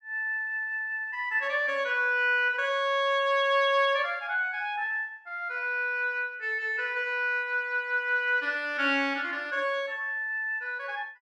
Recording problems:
none

